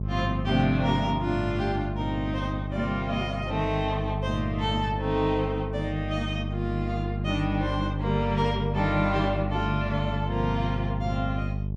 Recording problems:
electrical hum; 50 Hz, harmonics up to 450 Hz, SNR 3 dB

